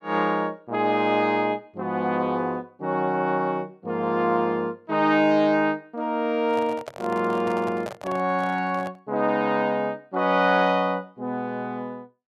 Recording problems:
handling noise; from 6.5 to 9 s; peak -5 dB vs average level

